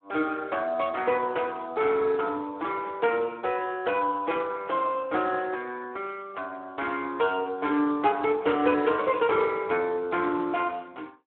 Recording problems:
phone line; 220 Hz to 3.7 kHz, Speex

